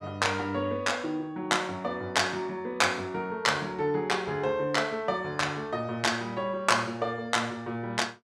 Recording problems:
none

